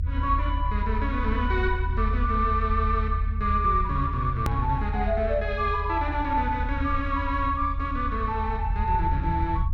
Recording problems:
rumble; below 78 Hz, strongest tone 44 Hz, SNR 2 dB
edit click; at 4.5 s

